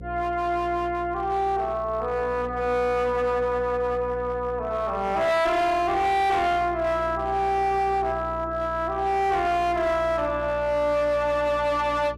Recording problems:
distorted audio; hard clipping, uneven, signal-to-distortion ratio 10 dB
electrical hum; 60 Hz, harmonics up to 540 Hz, SNR 16 dB

